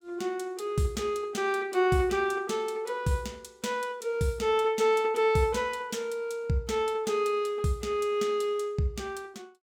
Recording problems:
none

